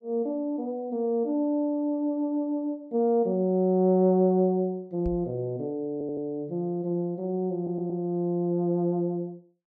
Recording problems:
knock on the microphone; at 5 s; peak -4 dB vs average level
audio stuttering; at 6 s and at 7.5 s

